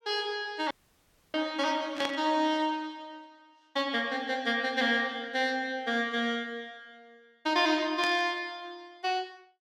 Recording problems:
audio cutting out; at 0.5 s for 0.5 s
burst of static; at 2 s and at 8 s; peak -2 dB vs average level

